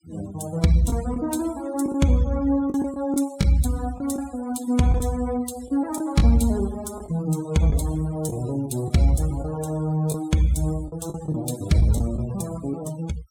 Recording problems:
denoising artefacts; signal-to-artefact ratio 19 dB
packet loss; 5% of the sound replaced, filled with the last packet

